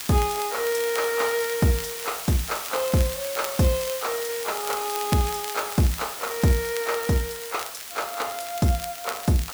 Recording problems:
hiss; slope +2 dB per octave, SNR 7 dB
crackle; vinyl, SNR 13 dB

